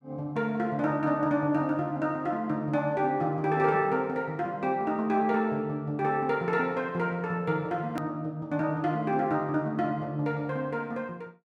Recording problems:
hard cut with a click; at 8 s

